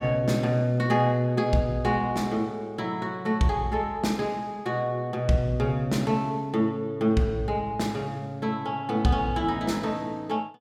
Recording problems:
none

